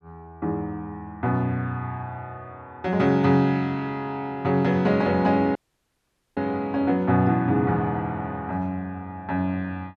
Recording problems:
audio cutting out; at 5.5 s for 1 s

